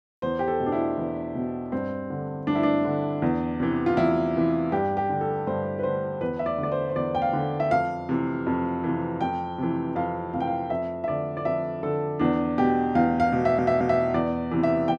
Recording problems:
audio stuttering; at 13 s

